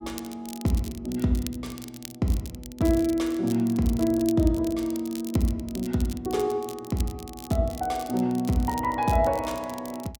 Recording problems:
crackling; vinyl, SNR 17 dB

